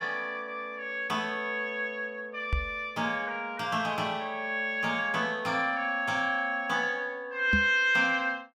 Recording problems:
microphone thump; at 2.5 s and at 7.5 s; peak +4 dB vs average level

